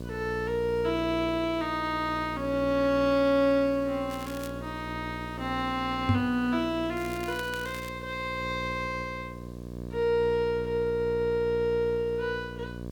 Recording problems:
electrical hum; 60 Hz, harmonics up to 1.1 kHz, SNR 11 dB
hiss; SNR 28 dB
crackle; at 4 s and at 7 s; loose cable, SNR 17 dB
microphone bump; at 6 s; peak +7 dB vs average level

